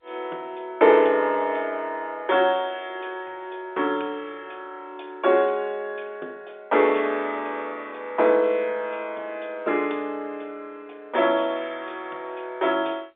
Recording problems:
phone line; 300 Hz to 3.6 kHz, G.711

